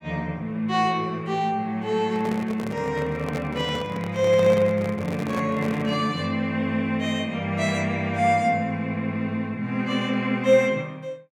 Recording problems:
microphone handling noise; from 2 to 6 s; peak -3 dB vs average level

